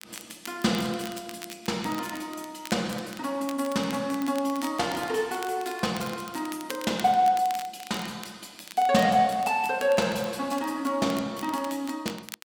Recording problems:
crackling; vinyl, SNR 16 dB

